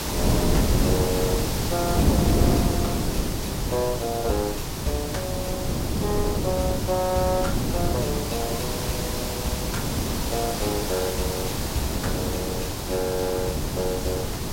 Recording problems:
background hiss; slope -2 dB per octave, SNR 2 dB
wind on the microphone; below 310 Hz, SNR -2 dB

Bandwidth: 16 kHz